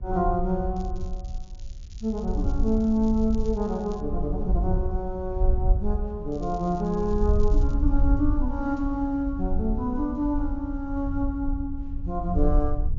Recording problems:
treble missing; nothing above 7 kHz
wind noise; below 60 Hz, SNR 2 dB
crackling; from 1 to 4 s and from 6.5 to 7.5 s; loose cable, SNR 27 dB

